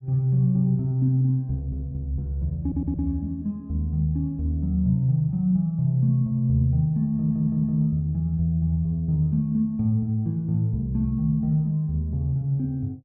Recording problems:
audio stuttering; at 2.5 s and at 7 s

